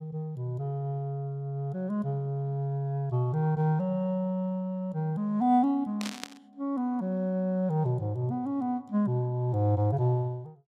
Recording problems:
static burst; at 6 s; peak -3 dB vs average level

